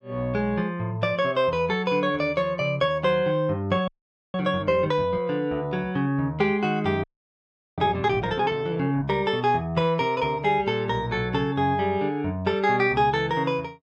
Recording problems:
audio freezing; at 4 s and at 7 s for 0.5 s

